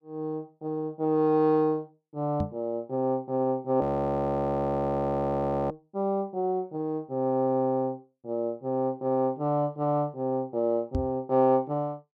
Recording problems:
knock on the microphone; at 2.5 s and at 11 s; peak +2 dB vs average level
frozen audio; at 4 s for 2 s

